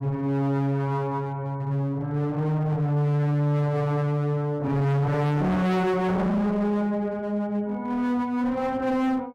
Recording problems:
distortion; hard clipping, uneven, signal-to-distortion ratio 5 dB

